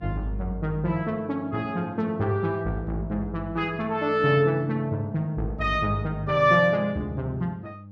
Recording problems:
hum; 50 Hz, harmonics up to 600 Hz, SNR 20 dB

